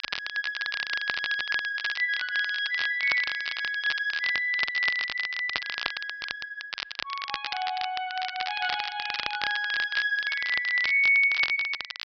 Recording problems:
low-pass filter; nothing above 5.5 kHz
crackling; vinyl, SNR 7 dB

